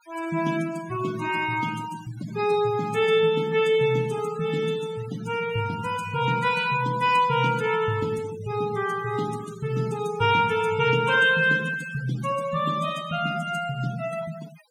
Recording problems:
noise reduction artefacts; signal-to-artefact ratio 17 dB

